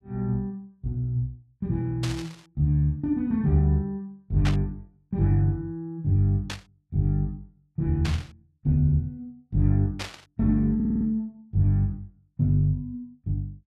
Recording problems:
static burst; 5 times, first at 2 s; peak -2 dB vs average level
stutter; at 11 s

